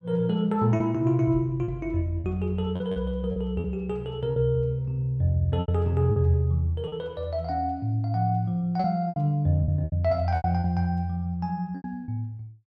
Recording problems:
lost packets; 8% of the sound replaced, filled with repeated pitch periods

